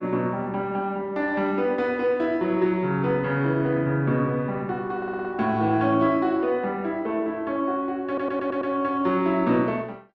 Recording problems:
lossy codec; Opus, log-spectral distance 2 dB
stutter; at 5 s and at 8 s

